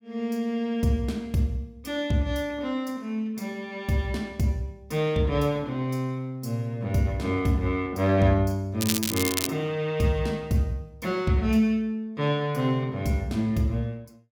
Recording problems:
crackle; at 9 s; loose cable, SNR 1 dB

